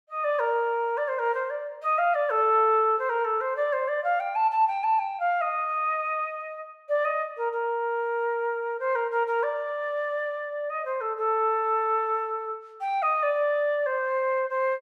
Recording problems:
none

